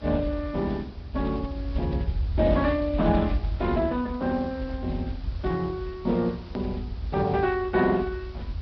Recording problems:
low-pass filter; nothing above 5.5 kHz
lossy codec; MP2, then Speex, log-spectral distance 2 dB
hiss; SNR 22 dB
rumble; below 84 Hz, SNR 7 dB
edit click; at 6.5 s

